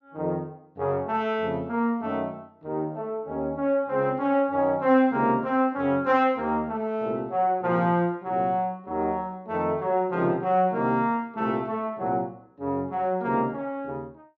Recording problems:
treble missing; nothing above 7.1 kHz

